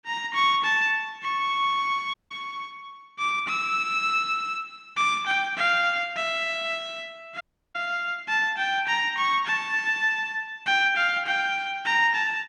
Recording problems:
audio cutting out; at 2 s and at 7.5 s

